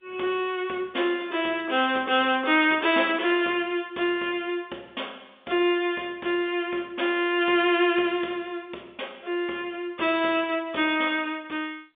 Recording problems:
phone line; 260 Hz to 3.6 kHz, G.711

